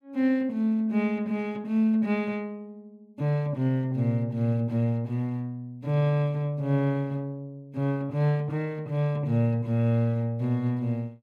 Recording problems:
none

